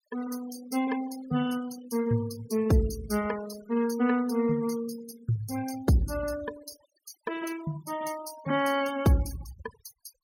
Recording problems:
denoising artefacts; signal-to-artefact ratio 17 dB

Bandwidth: 17 kHz